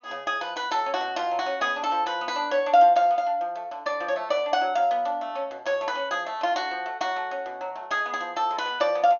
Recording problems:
treble cut off; nothing above 6.9 kHz

